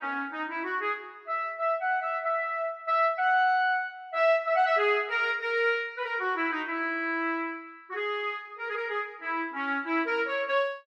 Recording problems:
none

